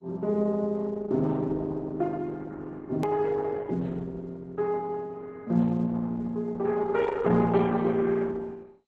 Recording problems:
lossy codec; MP2, then Opus, log-spectral distance 3 dB, nothing above 13.1 kHz
edit click; at 3 s

